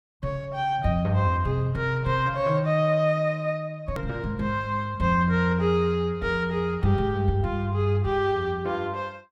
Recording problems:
click at an edit; at 4 s

